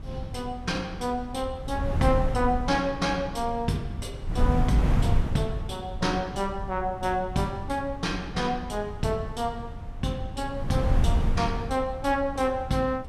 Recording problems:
wind on the microphone; below 120 Hz, SNR 3 dB

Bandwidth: 13.5 kHz